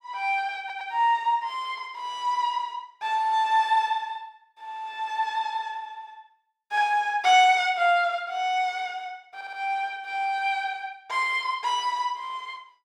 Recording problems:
audio stuttering; at 0.5 s and at 9.5 s

